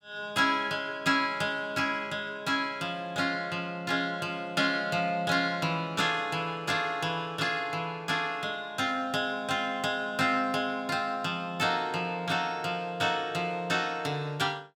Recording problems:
none

